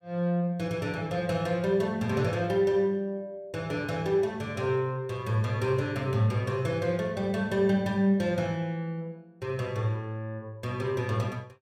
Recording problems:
none

